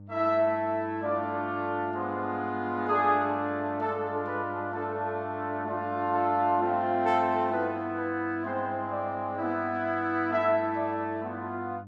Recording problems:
hum; 50 Hz, harmonics up to 600 Hz, SNR 18 dB

